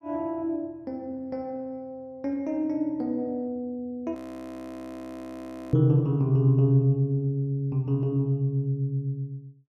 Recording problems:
audio freezing; at 4 s for 1.5 s

